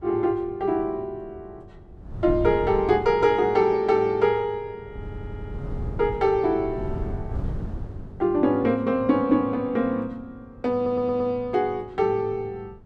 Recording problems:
wind on the microphone; below 160 Hz, SNR 11 dB
stutter; at 5 s and at 11 s

